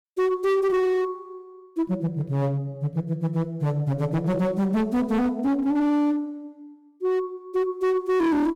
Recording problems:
distortion; hard clipping, uneven, signal-to-distortion ratio 8 dB

